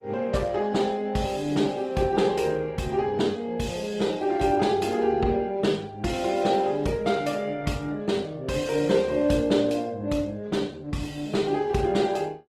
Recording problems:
codec artefacts; Opus, log-spectral distance 3 dB, nothing above 15.5 kHz

